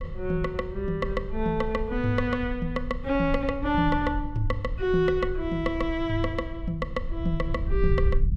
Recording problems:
low-frequency rumble; below 66 Hz, SNR 7 dB

